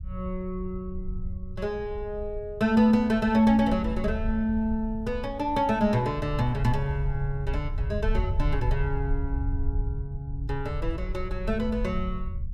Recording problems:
low-frequency rumble; below 74 Hz, SNR 7 dB

